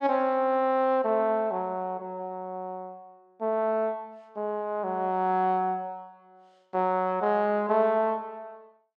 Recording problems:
none

